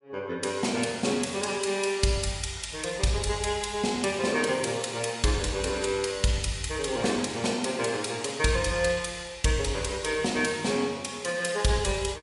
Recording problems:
codec artefacts; MP3, log-spectral distance 6 dB, nothing above 11 kHz

